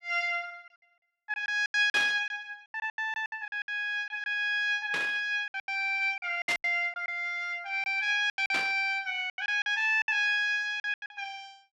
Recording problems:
lost packets; 13% of the sound replaced, filled with silence
static burst; 4 times, first at 2 s; peak 0 dB vs average level

